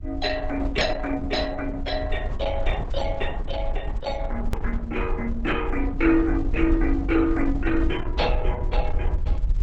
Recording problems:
lossy compression; Opus, log-spectral distance 4 dB, nothing above 7.3 kHz
low-frequency rumble; below 56 Hz, SNR 4 dB
edit click; at 4.5 s

